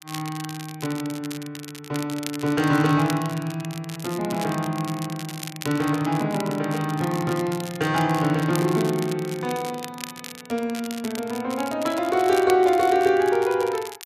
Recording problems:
crackle; vinyl, SNR 14 dB

